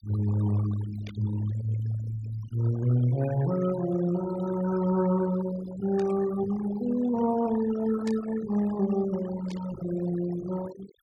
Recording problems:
denoising artefacts; signal-to-artefact ratio 15 dB
static burst; 4 times, first at 1 s; peak -11 dB vs average level

